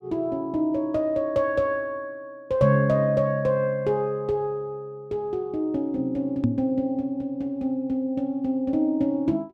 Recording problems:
knock on the microphone; at 6.5 s; peak +5 dB vs average level

